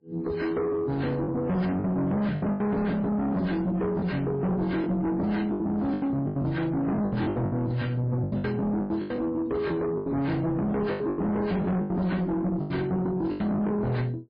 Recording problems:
lossy codec; AAC, then MP3, log-spectral distance 2 dB, nothing above 11.3 kHz
distorted audio; soft clipping, signal-to-distortion ratio 8 dB
lost packets; 11% of the sound replaced, filled with the last packet

